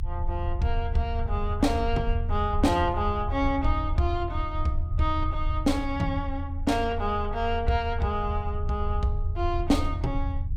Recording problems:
low-frequency rumble; below 80 Hz, strongest tone 26 Hz, SNR 3 dB

